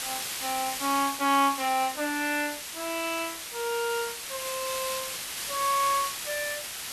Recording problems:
background hiss; slope +2 dB per octave, SNR 4 dB

